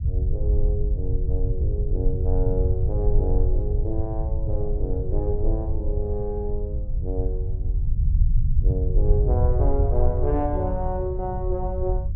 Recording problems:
low-frequency rumble; below 80 Hz, SNR -5 dB

